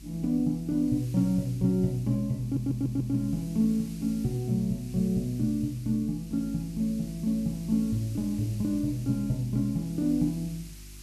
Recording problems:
mains hum; 50 Hz, harmonics up to 350 Hz, SNR 19 dB
background hiss; slope +3 dB per octave, SNR 22 dB
stutter; at 2.5 s

